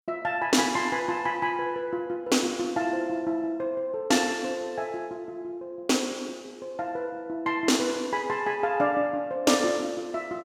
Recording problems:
none

